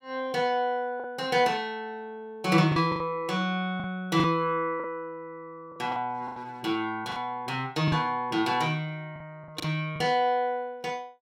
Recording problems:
packet loss; 6% of the sound replaced, filled with the last packet

